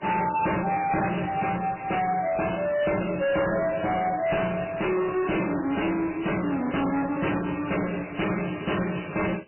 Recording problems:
codec artefacts; MP3, log-spectral distance 14 dB, nothing above 2.9 kHz
distorted audio; hard clipping, signal-to-distortion ratio 6 dB

